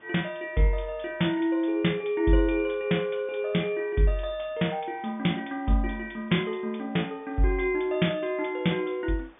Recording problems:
treble missing; nothing above 3.6 kHz
background hiss; SNR 29 dB

